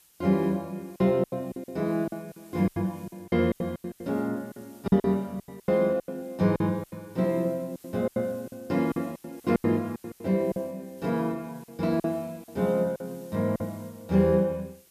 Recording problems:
background hiss; slope +1 dB per octave, SNR 27 dB
packet loss; 14% of the sound replaced, filled with silence

